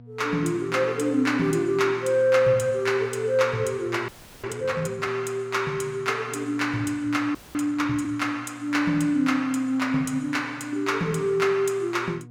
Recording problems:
hum; 60 Hz, harmonics up to 720 Hz, SNR 19 dB
audio freezing; at 4 s and at 7.5 s

